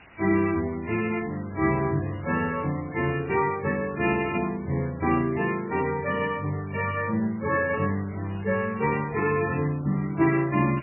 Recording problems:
lossy compression; MP3, log-spectral distance 8 dB, nothing above 2.4 kHz
background hiss; SNR 22 dB

